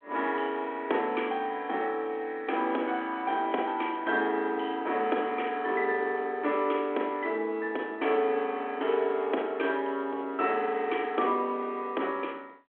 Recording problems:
phone line; 240 Hz to 3.4 kHz, G.726

